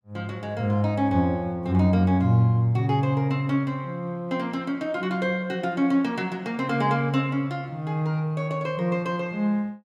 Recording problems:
none

